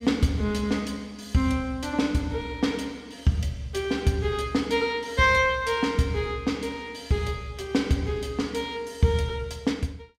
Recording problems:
none

